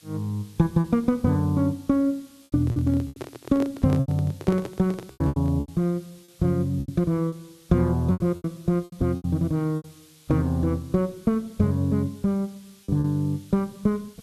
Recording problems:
hiss; slope +2 dB per octave, SNR 28 dB
packet loss; 8% of the sound replaced, filled with repeated pitch periods
handling noise; from 2.5 to 5.5 s; peak -4 dB vs average level

